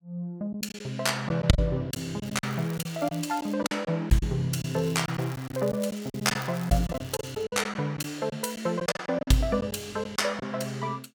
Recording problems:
packet loss; 9% of the sound replaced, filled with silence
crackle; from 2 to 3.5 s and from 4.5 to 7.5 s; loose cable, SNR 19 dB

